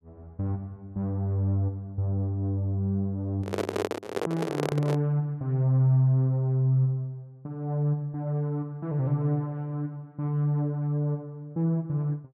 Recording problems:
microphone handling noise; from 3.5 to 5 s; peak +2 dB vs average level

